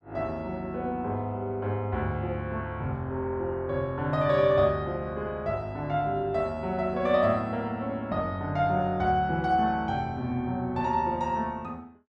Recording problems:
none

